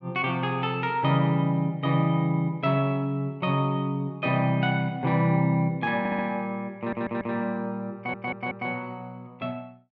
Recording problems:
stutter; at 6 s, at 7 s and at 8 s

